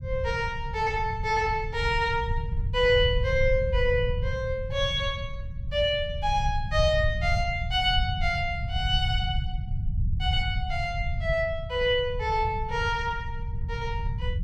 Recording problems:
low-frequency rumble; below 100 Hz, SNR 5 dB

